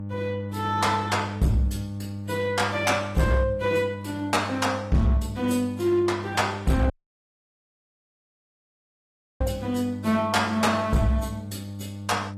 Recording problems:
codec artefacts; AAC, log-spectral distance 3 dB, nothing above 14.7 kHz
distortion; hard clipping, uneven, signal-to-distortion ratio 11 dB
hum; 50 Hz, harmonics up to 600 Hz, SNR 10 dB
dropout; at 7 s for 2.5 s

